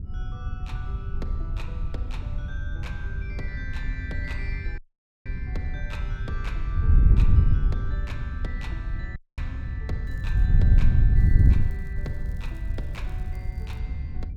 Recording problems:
wind on the microphone; below 90 Hz, SNR -13 dB
audio cutting out; at 5 s and at 9 s
crackling; at 10 s and from 11 to 14 s; loose cable, SNR 22 dB

